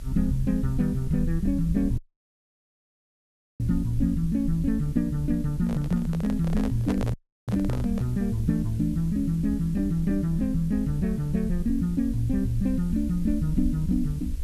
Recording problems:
electrical hum; 50 Hz, harmonics up to 1.1 kHz, SNR 30 dB
background hiss; slope +1 dB per octave, SNR 27 dB
rumble; below 68 Hz, strongest tone 24 Hz, SNR 9 dB
audio cutting out; at 2 s for 1.5 s and at 7 s
microphone handling noise; from 5.5 to 8 s; peak -3 dB vs average level

